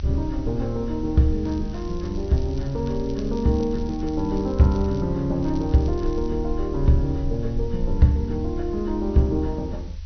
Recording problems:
treble missing; nothing above 6 kHz
hiss; slope +2 dB per octave, SNR 28 dB
low-frequency rumble; below 74 Hz, strongest tone 28 Hz, SNR 9 dB
crackling; from 1.5 to 5 s and at 5.5 s; loose cable, SNR 26 dB

